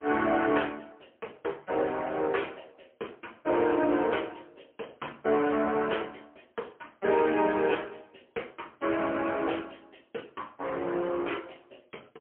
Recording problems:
phone line; 260 Hz to 3.3 kHz, AMR-NB, then MP3

